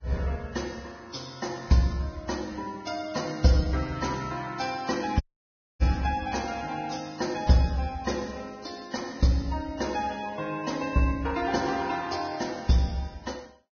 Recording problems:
codec artefacts; Vorbis, log-spectral distance 5 dB, nothing above 6.3 kHz
dropout; at 5 s for 0.5 s

